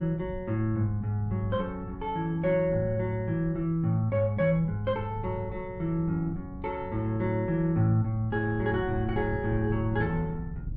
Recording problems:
wind on the microphone; below 130 Hz, SNR 13 dB

